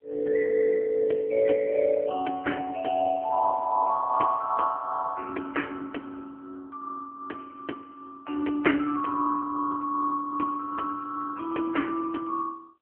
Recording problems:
phone line; 240 Hz to 3.1 kHz, AMR-NB

